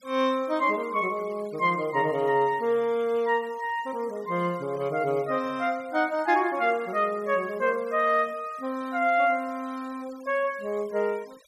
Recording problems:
denoising artefacts; signal-to-artefact ratio 25 dB

